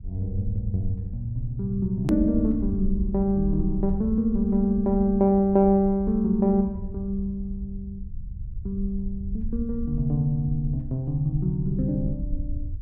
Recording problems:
low-frequency rumble; below 72 Hz, SNR 10 dB
hard cut with a click; at 2 s

